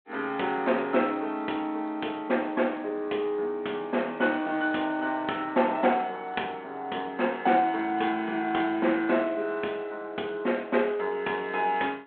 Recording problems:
telephone audio; 260 Hz to 3.4 kHz, G.726

